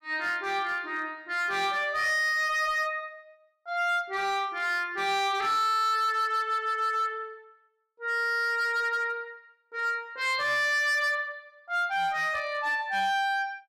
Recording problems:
distortion; hard clipping, signal-to-distortion ratio 12 dB

